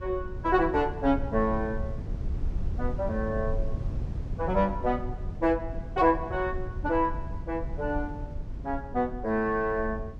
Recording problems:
rumble; below 98 Hz, SNR 7 dB

